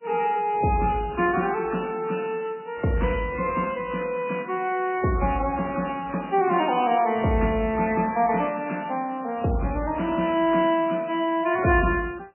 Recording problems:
lossy codec; MP3, log-spectral distance 6 dB, nothing above 2.5 kHz

